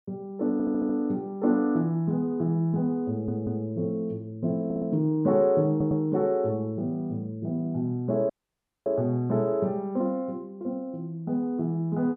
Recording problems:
stutter; 4 times, first at 0.5 s
dropout; at 8.5 s for 0.5 s

